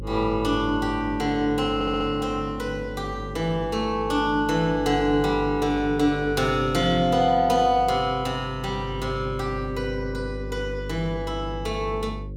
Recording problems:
hum; 50 Hz, harmonics up to 550 Hz, SNR 12 dB
stutter; at 2 s

